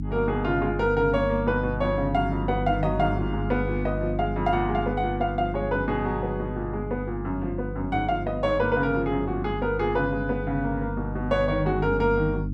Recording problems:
hum; 50 Hz, harmonics up to 300 Hz, SNR 6 dB

